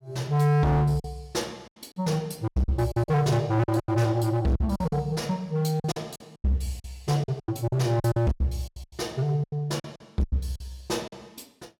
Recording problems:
distortion; hard clipping, signal-to-distortion ratio 8 dB
lost packets; 14% of the sound replaced, filled with silence

